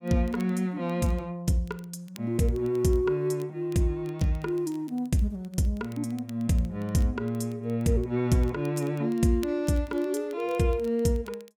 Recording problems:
crackling; vinyl, SNR 27 dB

